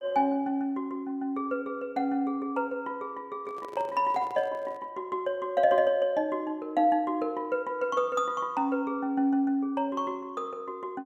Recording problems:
microphone handling noise; from 3.5 to 5 s; peak -9 dB vs average level

